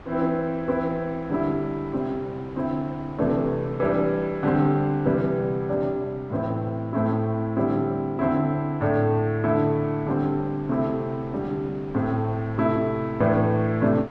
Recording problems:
wind noise; below 990 Hz, SNR 21 dB

